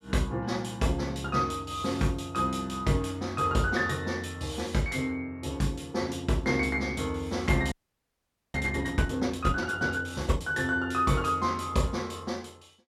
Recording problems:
frozen audio; at 7.5 s for 1 s

